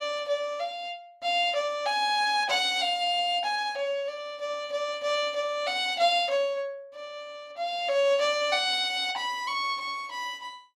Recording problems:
none

